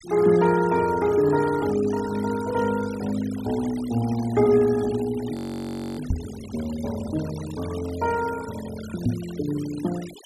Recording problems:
denoising artefacts; signal-to-artefact ratio 17 dB
audio freezing; at 5.5 s for 0.5 s
microphone bump; at 6 s and at 9 s; peak +5 dB vs average level

